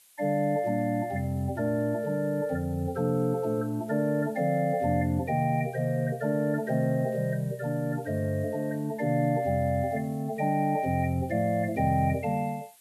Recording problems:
hiss; slope +2 dB per octave, SNR 27 dB

